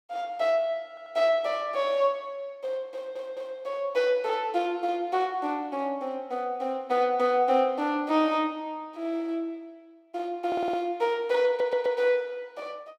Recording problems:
audio stuttering; 4 times, first at 1 s

